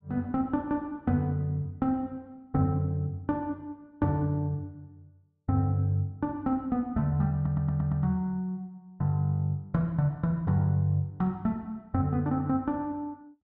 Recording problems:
stutter; at 7.5 s

